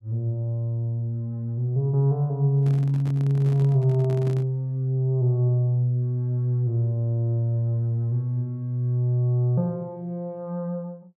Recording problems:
microphone handling noise; from 2.5 to 4.5 s; peak -10 dB vs average level

